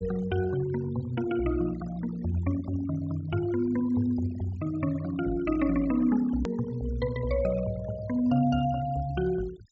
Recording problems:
treble cut off; nothing above 8 kHz
noise reduction artefacts; signal-to-artefact ratio 20 dB
edit click; at 6.5 s

